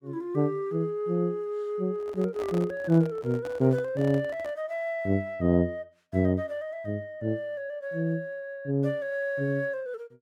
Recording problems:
microphone handling noise; from 2 to 4.5 s; peak -8 dB vs average level

